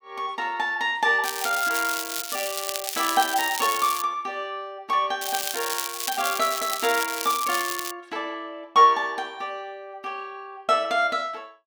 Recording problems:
crackling; from 1 to 4 s and from 5 to 8 s; loose cable, SNR 4 dB

